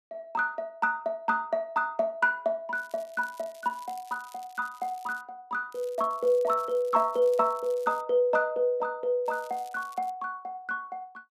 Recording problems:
crackle; from 3 to 5 s, from 5.5 to 8 s and at 9.5 s; loose cable, SNR 25 dB

